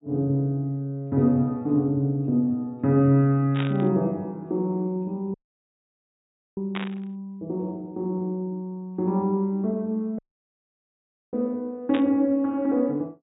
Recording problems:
treble cut off; nothing above 4 kHz
burst of static; at 3.5 s, at 7 s and at 12 s; peak -4 dB vs average level
dropout; at 5.5 s for 1 s and at 10 s for 1 s

